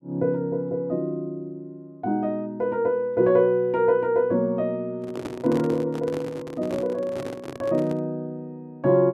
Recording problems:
microphone handling noise; from 5 to 8 s; peak -4 dB vs average level

